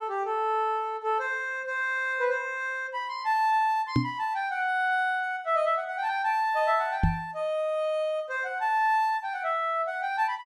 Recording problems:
microphone thump; at 4 s and at 7 s; peak +6 dB vs average level

